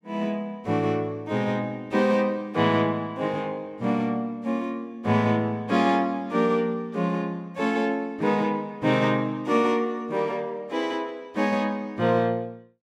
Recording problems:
none

